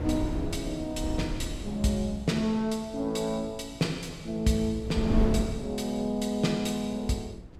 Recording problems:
wind on the microphone; below 210 Hz, SNR 4 dB

